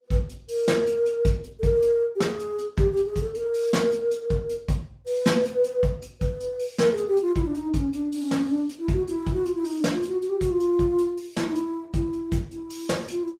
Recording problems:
codec artefacts; Opus, log-spectral distance 2 dB, nothing above 18.9 kHz

